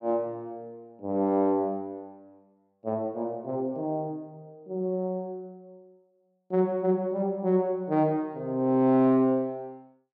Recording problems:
none

